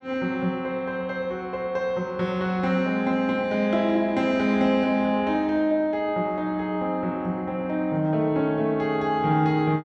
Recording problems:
none

